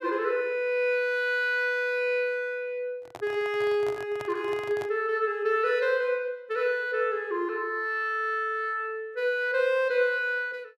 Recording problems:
microphone handling noise; from 3 to 5 s; peak -8 dB vs average level

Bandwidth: 14.5 kHz